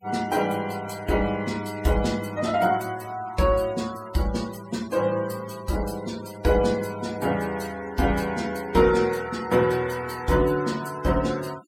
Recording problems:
denoising artefacts; signal-to-artefact ratio 18 dB

